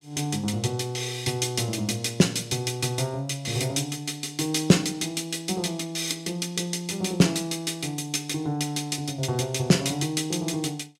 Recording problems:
none

